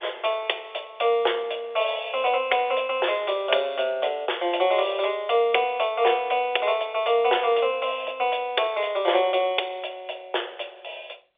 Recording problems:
phone line; 340 Hz to 3.6 kHz, G.711

